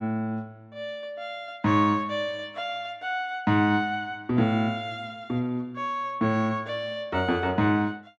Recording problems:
none

